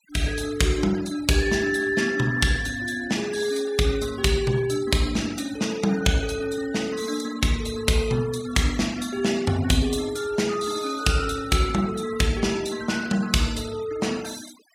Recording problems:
noise reduction artefacts; signal-to-artefact ratio 17 dB

